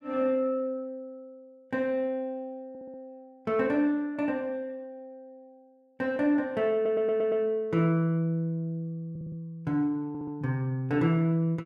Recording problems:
stutter; 4 times, first at 2.5 s

